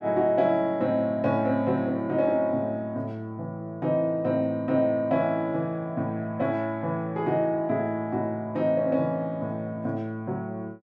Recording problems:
none

